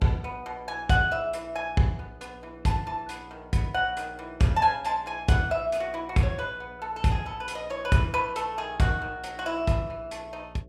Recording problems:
hum; 60 Hz, harmonics up to 660 Hz, SNR 23 dB

